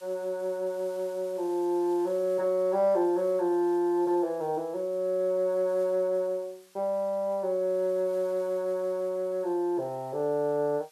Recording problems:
hiss; SNR 28 dB

